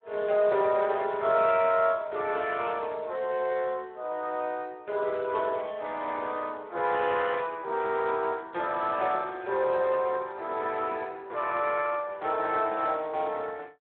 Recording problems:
telephone audio; 300 Hz to 3.5 kHz, Speex

